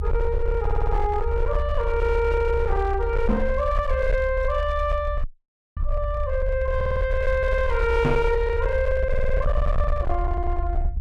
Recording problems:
distortion; hard clipping, signal-to-distortion ratio 10 dB
rumble; below 70 Hz, SNR 3 dB
stutter; at 0.5 s, at 7 s and at 9 s
knock on the microphone; at 3.5 s and at 8 s; peak +7 dB vs average level
frozen audio; at 5 s for 0.5 s

